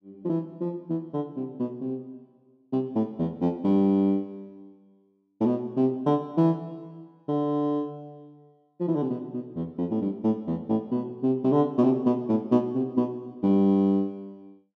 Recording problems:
none

